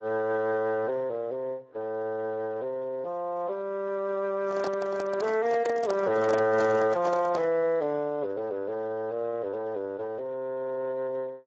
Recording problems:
codec artefacts; AAC, then Speex, log-spectral distance 2 dB
handling noise; from 4.5 to 7.5 s; peak -1 dB vs average level

